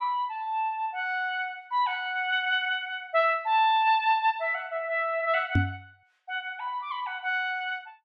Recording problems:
microphone bump; at 5.5 s; peak +6 dB vs average level

